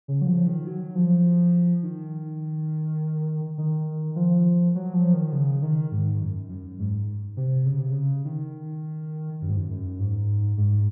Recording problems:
treble missing; nothing above 3.4 kHz

